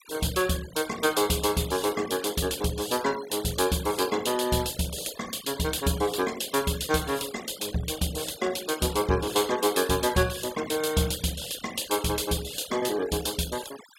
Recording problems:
denoising artefacts; signal-to-artefact ratio 15 dB

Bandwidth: 16 kHz